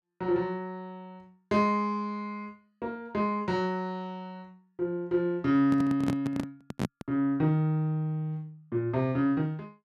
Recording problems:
microphone handling noise; from 5.5 to 7 s; peak +3 dB vs average level

